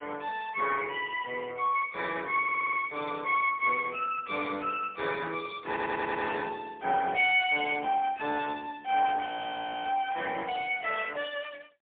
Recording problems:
phone line; 240 Hz to 3.5 kHz, AMR-NB, then MP3
stutter; at 2.5 s and at 5.5 s
audio freezing; at 9.5 s for 0.5 s

